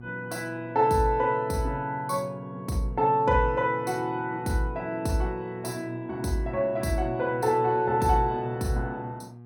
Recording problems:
hum; 60 Hz, harmonics up to 840 Hz, SNR 17 dB

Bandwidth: 17 kHz